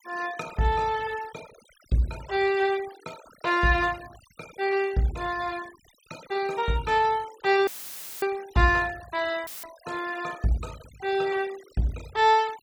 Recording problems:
noise reduction artefacts; signal-to-artefact ratio 20 dB
dropout; at 7.5 s for 0.5 s and at 9.5 s; filled with static

